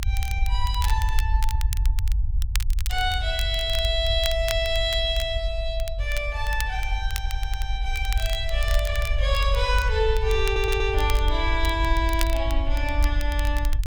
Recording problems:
low-frequency rumble; below 60 Hz, SNR 1 dB
crackle; vinyl, SNR 12 dB
audio stuttering; at 7 s and at 10 s

